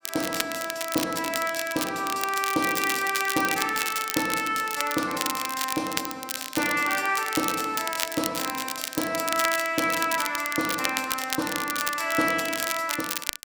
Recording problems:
crackle; vinyl, SNR 4 dB

